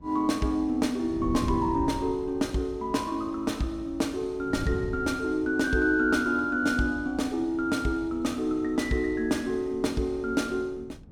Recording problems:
wind on the microphone; below 200 Hz, SNR 15 dB

